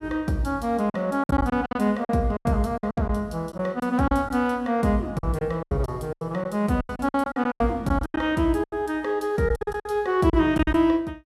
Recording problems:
packet loss; 14% of the sound replaced, filled with silence

